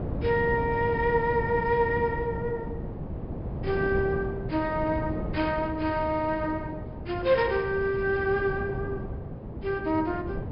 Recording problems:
treble missing; nothing above 5.5 kHz
wind on the microphone; below 330 Hz, SNR 7 dB

